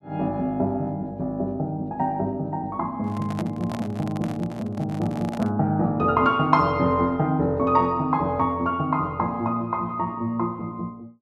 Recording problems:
microphone handling noise; from 3 to 5.5 s; peak -6 dB vs average level

